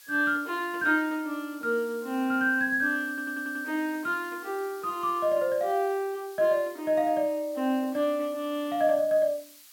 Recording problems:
background hiss; slope +4 dB per octave, SNR 22 dB
audio stuttering; at 3 s

